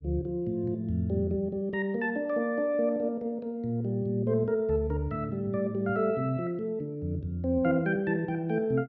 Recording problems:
none

